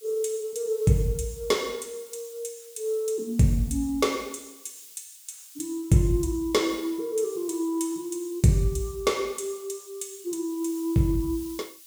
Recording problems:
background hiss; slope +7 dB per octave, SNR 20 dB

